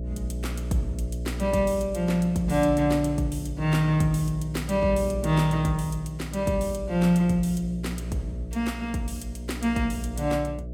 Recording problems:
electrical hum; 60 Hz, harmonics up to 660 Hz, SNR 9 dB

